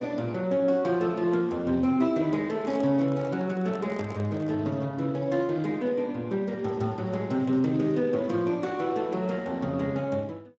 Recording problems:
lossy codec; Speex, log-spectral distance 2 dB
handling noise; from 2.5 to 4.5 s; peak -7 dB vs average level

